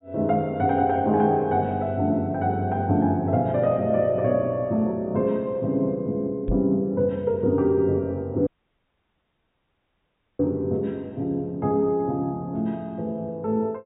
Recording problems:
low-pass filter; nothing above 4 kHz
microphone bump; at 6.5 s; peak -1 dB vs average level
dropout; at 8.5 s for 2 s

